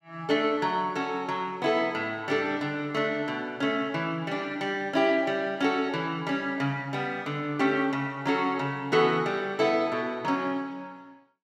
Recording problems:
none

